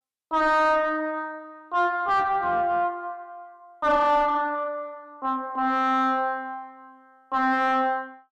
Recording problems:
distorted audio; soft clipping, signal-to-distortion ratio 6 dB

